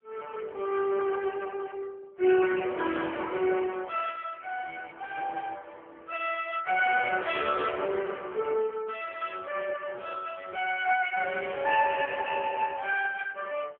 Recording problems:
phone line; 320 Hz to 2.9 kHz, AMR-NB

